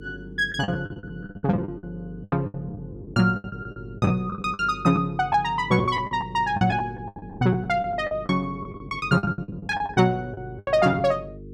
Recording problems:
hum; 50 Hz, harmonics up to 500 Hz, SNR 17 dB
packet loss; 18% of the sound replaced, filled with the last packet

